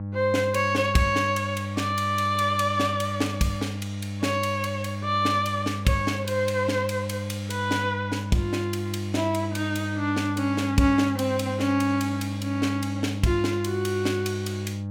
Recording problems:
hum; 50 Hz, harmonics up to 800 Hz, SNR 6 dB

